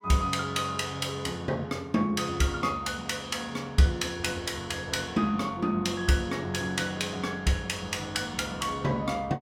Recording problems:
none

